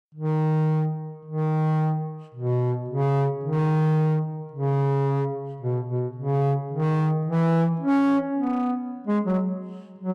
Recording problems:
distorted audio; hard clipping, signal-to-distortion ratio 11 dB

